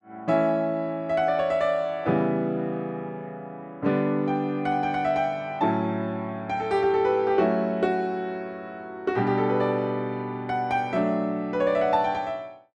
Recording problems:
none

